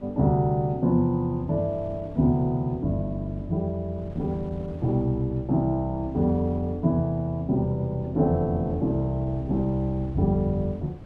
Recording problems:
wind noise; below 250 Hz, SNR 19 dB

